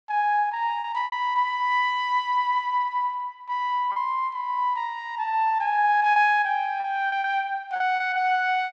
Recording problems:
lost packets; 5% of the sound replaced, filled with repeated pitch periods

